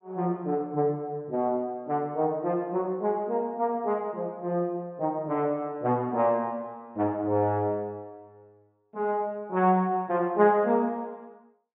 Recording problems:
low-pass filter; nothing above 4 kHz

